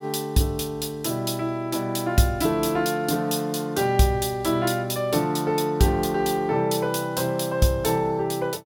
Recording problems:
none

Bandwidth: 17 kHz